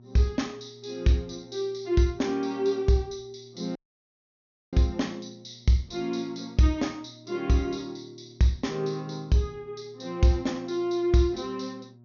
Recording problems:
treble cut off; nothing above 6.7 kHz
hum; 60 Hz, harmonics up to 720 Hz, SNR 26 dB
audio cutting out; at 4 s for 1 s

